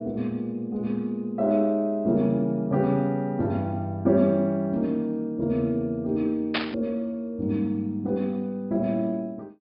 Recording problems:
low-pass filter; nothing above 5.5 kHz
burst of static; at 6.5 s; peak +3 dB vs average level

